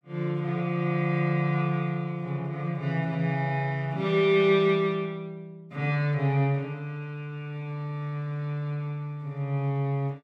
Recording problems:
none

